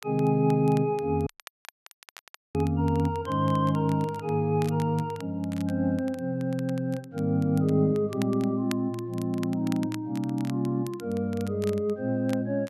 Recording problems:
crackling; vinyl, SNR 21 dB
dropout; at 1.5 s for 1.5 s

